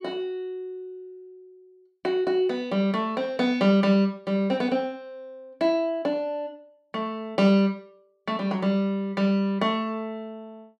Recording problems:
none

